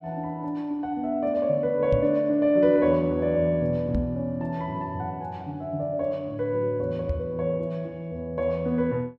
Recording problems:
knock on the microphone; at 2 s, at 4 s and at 7 s; peak +3 dB vs average level

